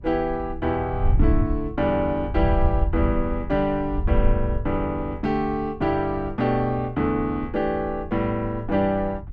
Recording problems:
wind noise; below 78 Hz, SNR 5 dB

